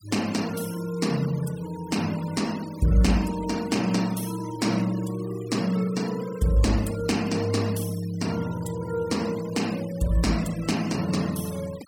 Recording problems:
noise reduction artefacts; signal-to-artefact ratio 16 dB

